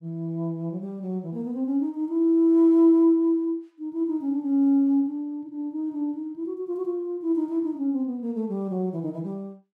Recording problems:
none

